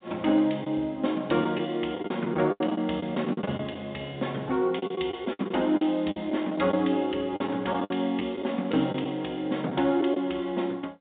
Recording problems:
phone line; 190 Hz to 3.7 kHz, G.711
lost packets; 9% of the sound replaced, filled with the last packet

